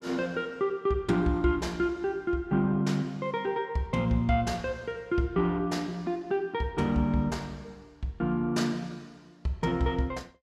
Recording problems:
none

